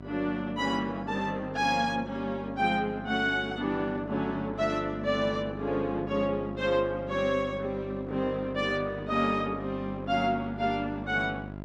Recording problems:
mains hum; 50 Hz, harmonics up to 1.6 kHz, SNR 12 dB

